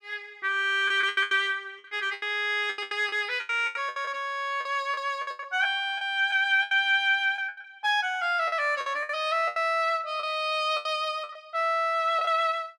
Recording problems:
packet loss; 14% of the sound replaced, filled with the last packet

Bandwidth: 14.5 kHz